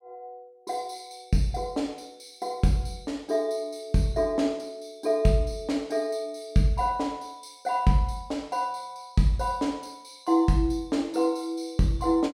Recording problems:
none

